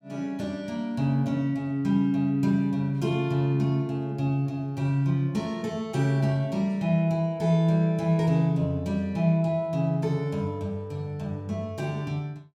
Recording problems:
none

